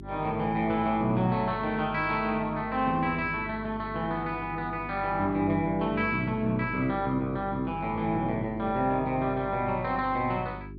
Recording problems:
hum; 50 Hz, harmonics up to 400 Hz, SNR 14 dB

